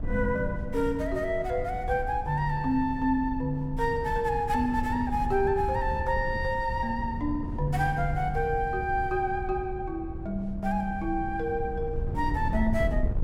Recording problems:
wind on the microphone; below 110 Hz, SNR 7 dB

